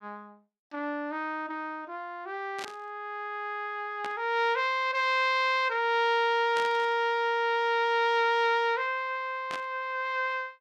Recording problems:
burst of static; 4 times, first at 2.5 s; peak -6 dB vs average level

